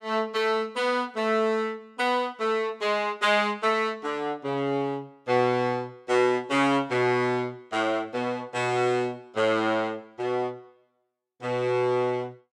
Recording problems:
none

